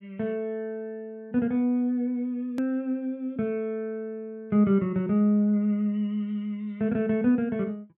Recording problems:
click at an edit; at 2.5 s

